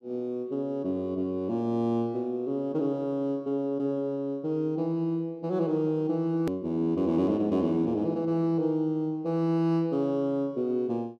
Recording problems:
hard cut with a click; at 6.5 s

